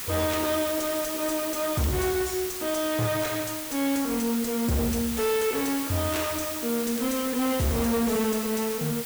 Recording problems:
distortion; soft clipping, signal-to-distortion ratio 7 dB
hiss; slope 0 dB per octave, SNR 5 dB
crackle; vinyl, SNR 27 dB

